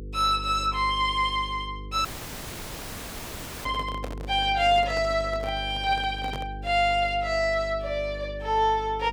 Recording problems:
hum; 50 Hz, harmonics up to 500 Hz, SNR 13 dB
audio cutting out; at 2 s for 1.5 s
handling noise; from 3.5 to 6.5 s; peak -6 dB vs average level

